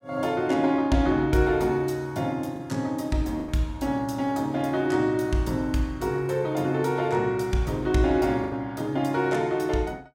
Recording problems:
packet loss; 2% of the sound replaced, filled with the last packet

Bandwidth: 16.5 kHz